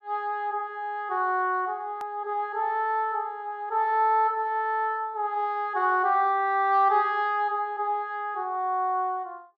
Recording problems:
click at an edit; at 2 s

